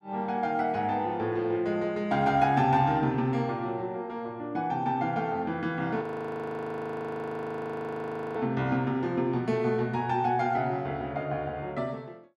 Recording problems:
audio freezing; at 6 s for 2.5 s

